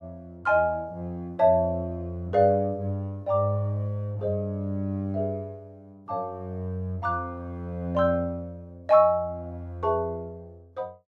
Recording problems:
none

